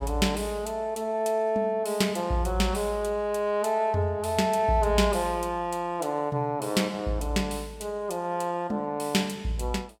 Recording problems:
none

